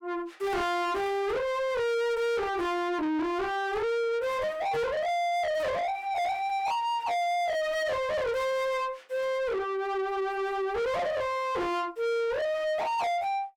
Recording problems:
distorted audio; soft clipping, signal-to-distortion ratio 6 dB

